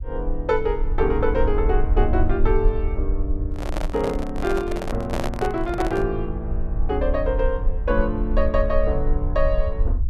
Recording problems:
rumble; below 54 Hz, SNR 2 dB
handling noise; from 3.5 to 6 s; peak +1 dB vs average level

